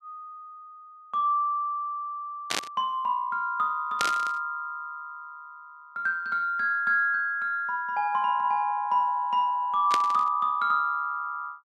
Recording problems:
static burst; at 2.5 s, at 4 s and at 10 s; peak +2 dB vs average level

